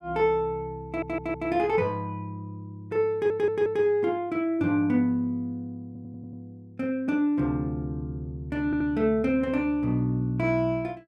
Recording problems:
stutter; 4 times, first at 1 s

